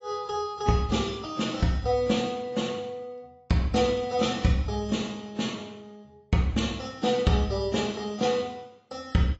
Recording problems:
lossy compression; AAC, log-spectral distance 3 dB, nothing above 7.6 kHz

